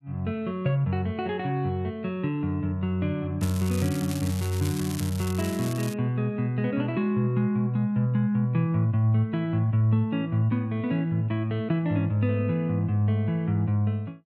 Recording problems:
crackle; from 3.5 to 6 s; loose cable, SNR 13 dB

